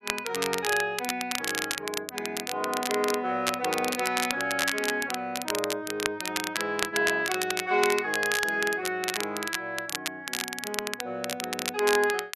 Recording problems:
crackling; vinyl, SNR 3 dB

